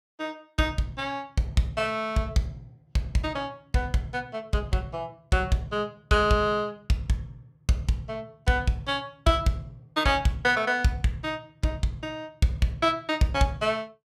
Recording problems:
none

